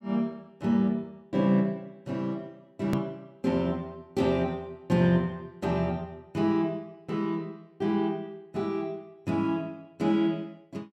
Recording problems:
edit click; at 3 s

